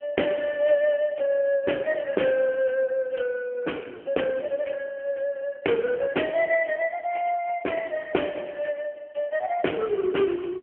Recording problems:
telephone audio; 300 Hz to 3.1 kHz, AMR-NB

